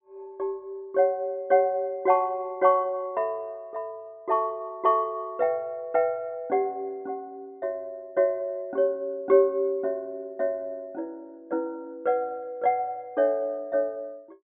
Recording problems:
treble missing; nothing above 4 kHz

